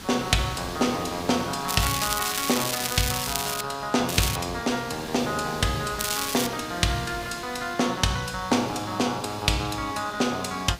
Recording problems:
background hiss; slope -2 dB per octave, SNR 13 dB
crackling; from 1.5 to 3.5 s, at 4 s and at 6 s; loose cable, SNR 2 dB

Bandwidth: 15.5 kHz